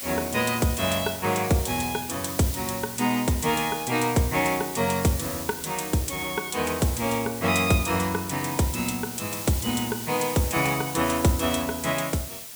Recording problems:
background hiss; slope +1 dB per octave, SNR 8 dB

